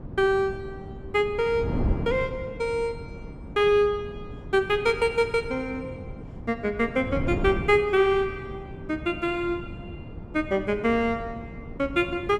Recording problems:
wind on the microphone; below 260 Hz, SNR 11 dB

